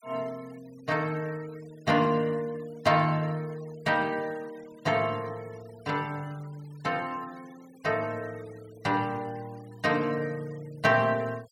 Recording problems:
denoising artefacts; signal-to-artefact ratio 24 dB

